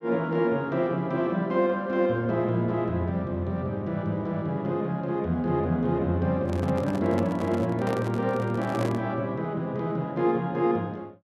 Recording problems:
handling noise; from 6.5 to 9 s; peak -2 dB vs average level

